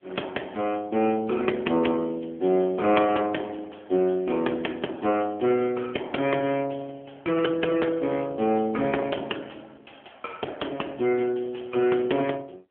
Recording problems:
telephone audio; 220 Hz to 3.3 kHz, AMR-NB

